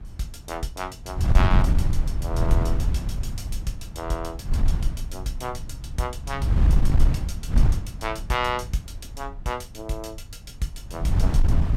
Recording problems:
wind on the microphone; below 86 Hz, SNR -7 dB

